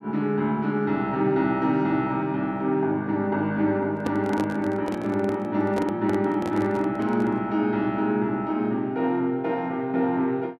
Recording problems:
handling noise; from 4 to 7.5 s; peak -3 dB vs average level

